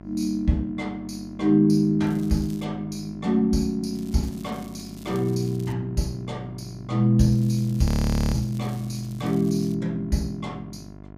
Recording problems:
hum; 50 Hz, harmonics up to 1.4 kHz, SNR 18 dB
crackle; at 2 s, from 4 to 5.5 s and from 7.5 to 9.5 s; loose cable, SNR 25 dB
frozen audio; at 8 s

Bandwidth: 15 kHz